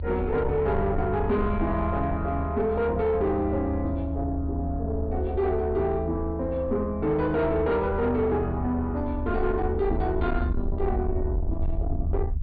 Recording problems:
low-pass filter; nothing above 4.6 kHz
distorted audio; soft clipping, signal-to-distortion ratio 11 dB
low-frequency rumble; below 78 Hz, SNR 5 dB

